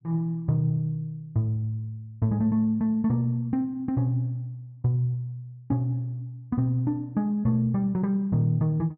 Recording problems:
none

